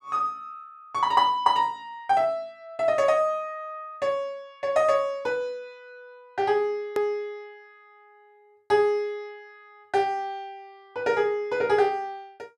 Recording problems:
click at an edit; at 7 s

